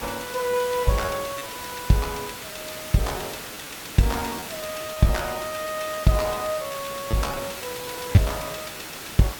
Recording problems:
background hiss; slope -2 dB per octave, SNR 8 dB
lost packets; 7% of the sound replaced, filled with repeated pitch periods

